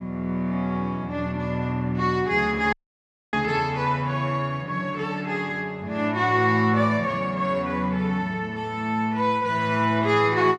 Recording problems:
dropout; at 2.5 s for 0.5 s

